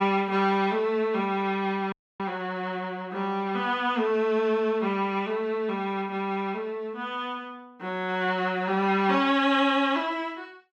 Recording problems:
dropout; at 2 s

